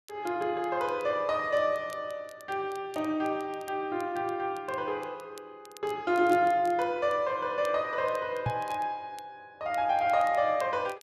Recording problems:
crackling; vinyl, SNR 26 dB
microphone thump; at 8.5 s; peak +1 dB vs average level

